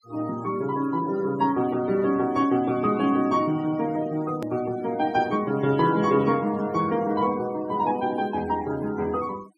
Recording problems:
denoising artefacts; signal-to-artefact ratio 20 dB
hard cut with a click; at 4.5 s

